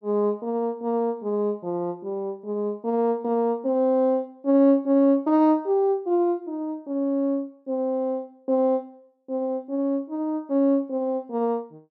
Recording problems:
none

